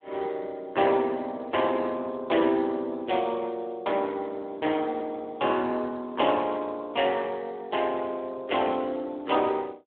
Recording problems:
telephone audio; 190 Hz to 3.6 kHz, Speex

